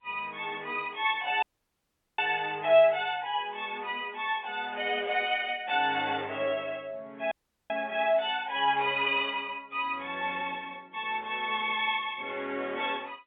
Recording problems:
telephone audio; 300 Hz to 3.6 kHz, G.711
audio cutting out; at 1.5 s for 1 s and at 7.5 s

